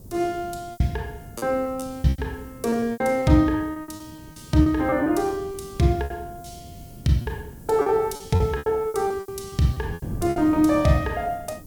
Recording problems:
background hiss; SNR 28 dB
wind noise; below 240 Hz, SNR 17 dB
packet loss; 14% of the sound replaced, filled with repeated pitch periods

